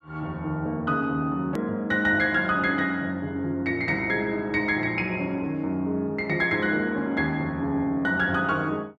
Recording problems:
click at an edit; at 1.5 s

